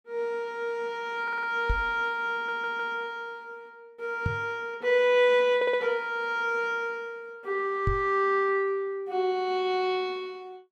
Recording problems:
audio stuttering; at 1 s, at 2.5 s and at 5.5 s
knock on the microphone; at 1.5 s, at 4.5 s and at 8 s; peak +2 dB vs average level

